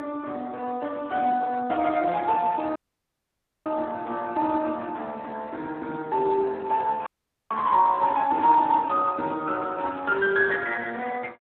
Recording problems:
phone line; 260 Hz to 2.6 kHz, Speex
dropout; at 3 s for 1 s and at 7 s

